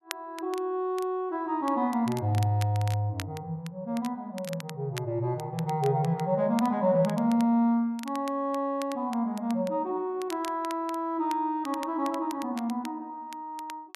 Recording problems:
crackling; vinyl, SNR 18 dB

